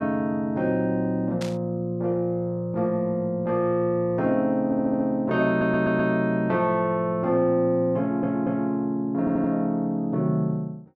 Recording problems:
static burst; at 1.5 s; peak -8 dB vs average level
stutter; 4 times, first at 4.5 s

